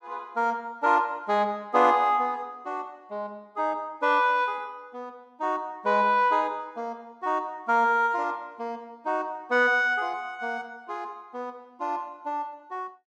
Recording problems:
none

